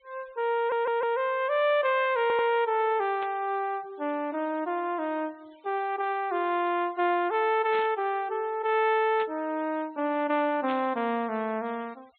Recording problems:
treble cut off; nothing above 4 kHz
noise reduction artefacts; signal-to-artefact ratio 28 dB
stutter; at 0.5 s and at 2 s
burst of static; 4 times, first at 3 s; peak -9 dB vs average level

